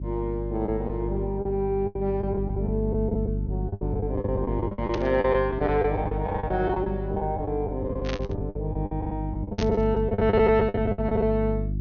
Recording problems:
treble missing; nothing above 6.4 kHz
electrical hum; 50 Hz, harmonics up to 350 Hz, SNR 5 dB
lost packets; 15% of the sound replaced, filled with the last packet
static burst; at 5 s, at 8 s and at 9.5 s; peak -4 dB vs average level

